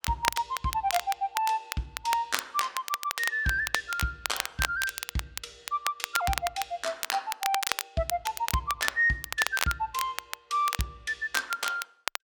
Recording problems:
crackle; vinyl, SNR 4 dB

